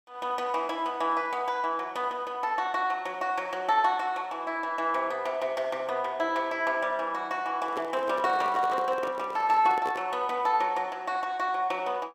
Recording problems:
microphone handling noise; from 7.5 to 10 s; peak -4 dB vs average level

